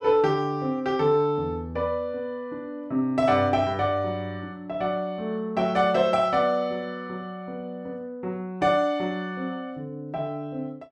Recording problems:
none

